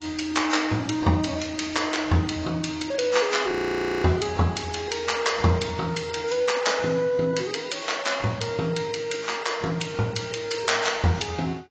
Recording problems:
codec artefacts; AAC, log-spectral distance 5 dB, nothing above 7.6 kHz
frozen audio; at 3.5 s for 0.5 s

